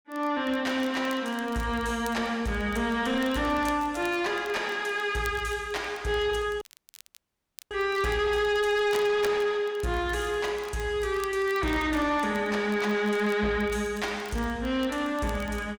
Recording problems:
distortion; soft clipping, signal-to-distortion ratio 11 dB
crackle; vinyl, SNR 23 dB
audio cutting out; at 6.5 s for 1 s

